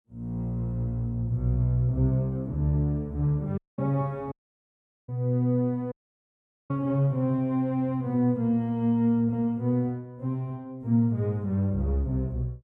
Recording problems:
dropout; at 3.5 s, at 4.5 s for 1 s and at 6 s for 1 s

